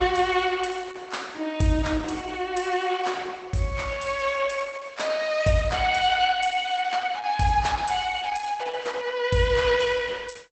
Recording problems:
lossy compression; Opus, log-spectral distance 5 dB, nothing above 8.2 kHz

